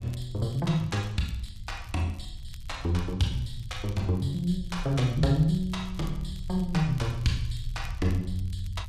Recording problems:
low-frequency rumble; below 78 Hz, SNR 12 dB
crackling; vinyl, SNR 26 dB

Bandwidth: 14.5 kHz